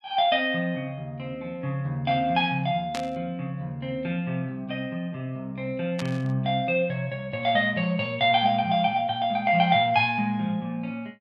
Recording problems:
static burst; at 3 s and at 6 s; peak -5 dB vs average level

